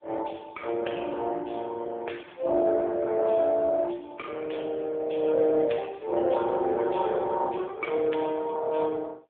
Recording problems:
telephone audio; 240 Hz to 3.4 kHz, AMR-NB

